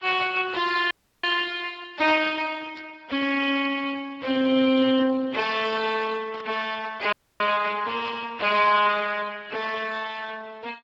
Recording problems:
codec artefacts; Vorbis, then Speex, log-spectral distance 5 dB
audio cutting out; at 1 s and at 7 s
burst of static; 4 times, first at 3 s; peak -12 dB vs average level

